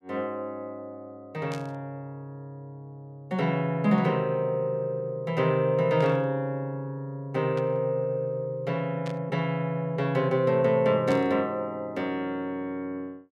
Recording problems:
burst of static; 5 times, first at 1.5 s; peak -11 dB vs average level

